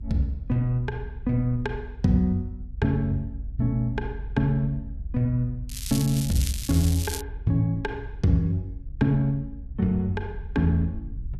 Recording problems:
rumble; below 68 Hz, strongest tone 46 Hz, SNR 12 dB
crackling; from 5.5 to 7 s; loose cable, SNR 8 dB

